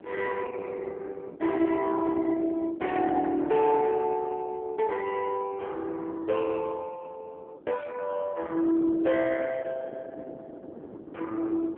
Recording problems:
phone line; 240 Hz to 2.6 kHz, AMR-NB
distorted audio; soft clipping, signal-to-distortion ratio 13 dB
wind noise; below 640 Hz, SNR 15 dB

